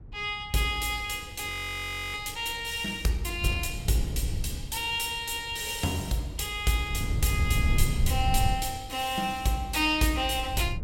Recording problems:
wind noise; below 110 Hz, SNR 3 dB
audio freezing; at 1.5 s for 0.5 s

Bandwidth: 16.5 kHz